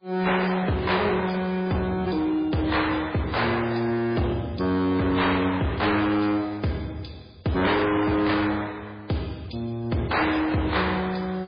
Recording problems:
lossy codec; AAC, then MP3, log-spectral distance 5 dB, nothing above 4.1 kHz
distorted audio; hard clipping, signal-to-distortion ratio 7 dB

